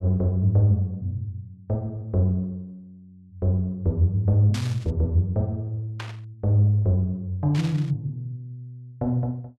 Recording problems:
static burst; at 4.5 s, at 6 s and at 7.5 s; peak -7 dB vs average level

